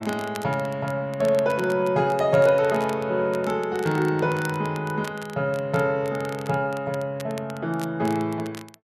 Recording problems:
crackle; vinyl, SNR 20 dB

